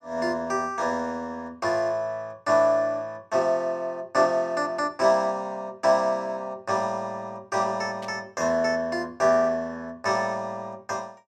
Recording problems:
burst of static; at 8 s; peak -14 dB vs average level

